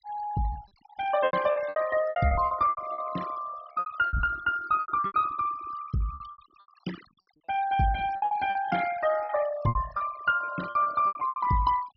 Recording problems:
low-pass filter; nothing above 5.5 kHz
denoising artefacts; signal-to-artefact ratio 15 dB
packet loss; 17% of the sound replaced, filled with repeated pitch periods

